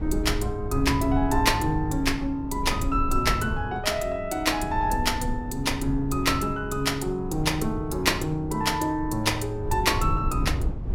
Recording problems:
rumble; below 100 Hz, SNR 7 dB

